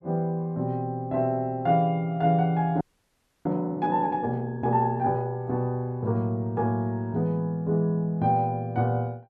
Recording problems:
frozen audio; at 3 s for 0.5 s

